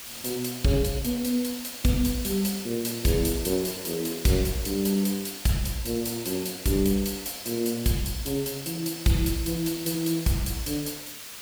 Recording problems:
background hiss; slope +1 dB per octave, SNR 11 dB

